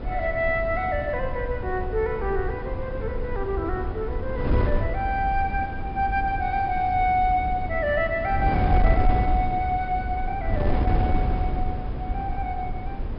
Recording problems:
treble missing; nothing above 5.5 kHz
wind noise; below 120 Hz, SNR 2 dB

